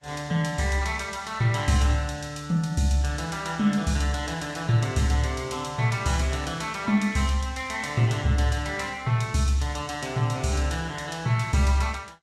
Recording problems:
lossy codec; Vorbis, log-spectral distance 3 dB, nothing above 12.7 kHz

